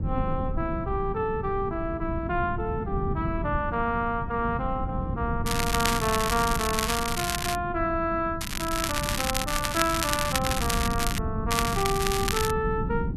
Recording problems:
rumble; below 180 Hz, SNR 5 dB
crackle; from 5.5 to 7.5 s, from 8.5 to 11 s and at 12 s; loose cable, SNR 1 dB

